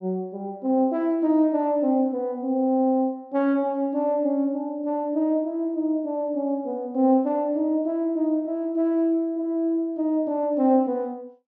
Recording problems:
none

